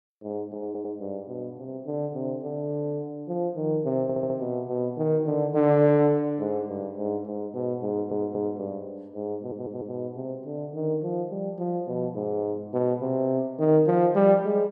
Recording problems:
audio stuttering; 4 times, first at 0.5 s

